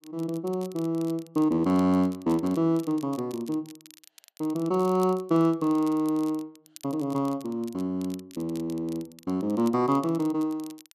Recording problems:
crackle; vinyl, SNR 23 dB

